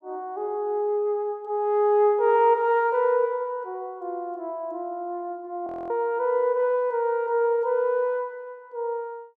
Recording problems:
frozen audio; at 5.5 s

